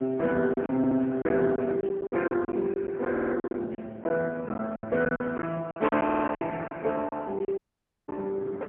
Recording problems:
telephone audio; 190 Hz to 2.6 kHz, AMR-NB, then MP3
wind noise; below 420 Hz, SNR 19 dB
packet loss; 11% of the sound replaced, filled with silence
stutter; at 1 s, at 3 s and at 6 s
dropout; at 7.5 s for 0.5 s

